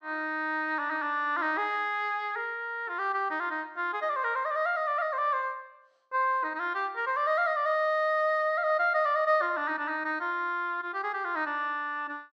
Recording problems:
none

